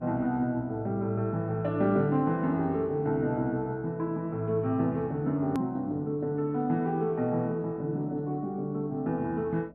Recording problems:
hum; 60 Hz, harmonics up to 660 Hz, SNR 27 dB
edit click; at 5.5 s

